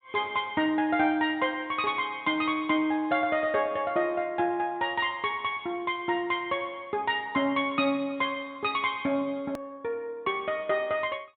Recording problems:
low-pass filter; nothing above 4 kHz
edit click; at 9.5 s

